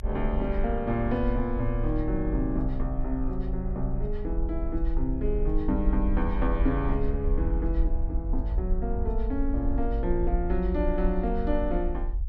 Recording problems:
rumble; below 50 Hz, SNR 1 dB

